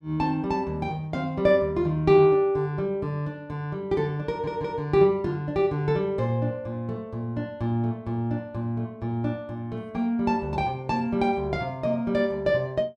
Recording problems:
audio stuttering; at 4.5 s

